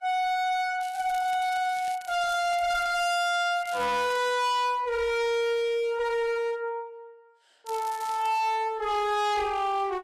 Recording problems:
lossy codec; Vorbis, log-spectral distance 2 dB, nothing above 13.1 kHz
distortion; hard clipping, uneven, signal-to-distortion ratio 6 dB
crackle; from 1 to 3 s, at 3.5 s and at 7.5 s; loose cable, SNR 19 dB

